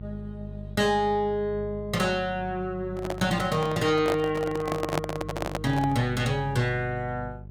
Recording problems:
hum; 50 Hz, harmonics up to 450 Hz, SNR 13 dB
handling noise; from 3 to 6 s; peak +3 dB vs average level

